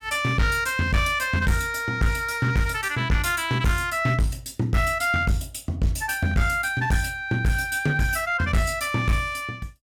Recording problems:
distorted audio; hard clipping, uneven, signal-to-distortion ratio 10 dB

